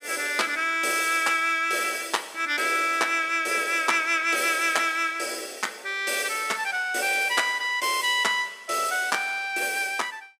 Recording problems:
none

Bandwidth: 15.5 kHz